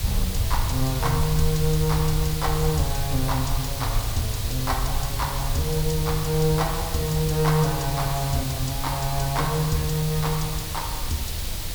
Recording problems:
hiss; SNR 5 dB
low-frequency rumble; below 78 Hz, SNR 5 dB
wind on the microphone; below 460 Hz, SNR 21 dB

